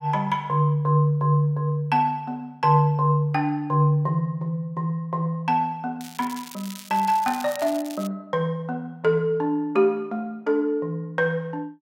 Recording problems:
crackling; from 6 to 8 s; loose cable, SNR 16 dB

